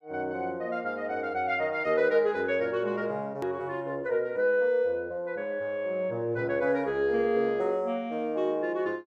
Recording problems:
hard cut with a click; at 3.5 s

